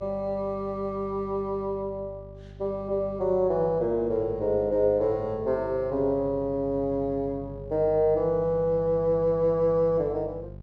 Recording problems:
mains hum; 50 Hz, harmonics up to 600 Hz, SNR 17 dB

